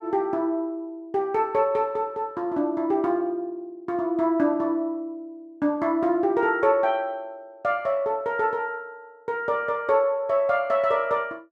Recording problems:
none

